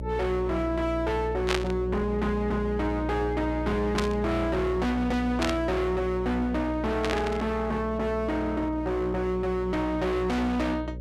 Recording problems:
distortion; hard clipping, uneven, signal-to-distortion ratio 6 dB
electrical hum; 60 Hz, harmonics up to 600 Hz, SNR 8 dB
static burst; 4 times, first at 1.5 s; peak +4 dB vs average level

